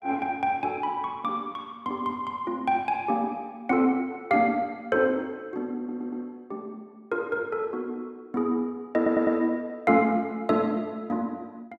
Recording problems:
audio stuttering; at 6 s and at 9 s

